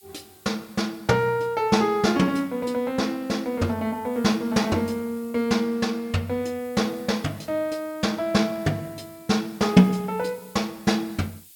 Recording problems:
background hiss; SNR 25 dB

